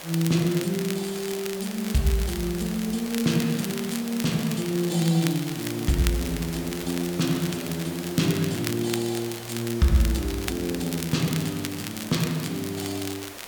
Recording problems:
background hiss; slope -3 dB per octave, SNR 12 dB
crackle; vinyl, SNR 10 dB

